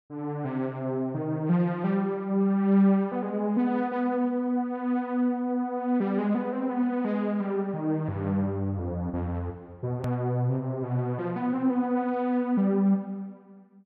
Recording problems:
hard cut with a click; at 10 s

